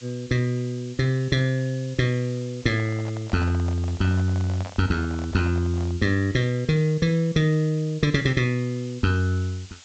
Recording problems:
low-pass filter; nothing above 8 kHz
background hiss; slope +3 dB per octave, SNR 22 dB
handling noise; from 2.5 to 6 s; peak -9 dB vs average level

